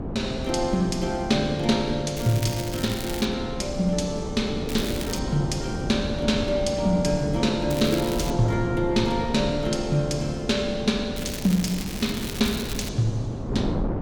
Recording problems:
wind on the microphone; below 350 Hz, SNR 7 dB
crackling; 4 times, first at 2 s; loose cable, SNR 11 dB

